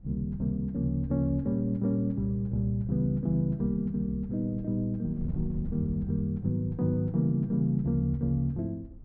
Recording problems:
wind on the microphone; below 98 Hz, SNR 16 dB

